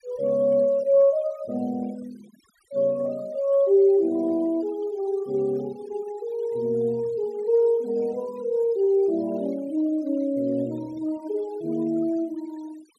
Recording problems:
denoising artefacts; signal-to-artefact ratio 26 dB

